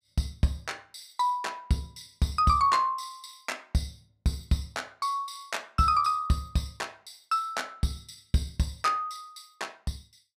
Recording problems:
none

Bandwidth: 15 kHz